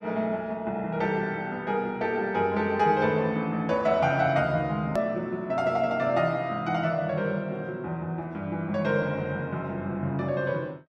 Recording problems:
edit click; at 5 s

